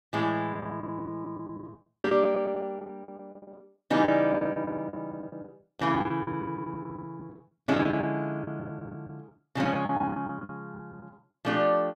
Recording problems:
lost packets; 16% of the sound replaced, filled with the last packet

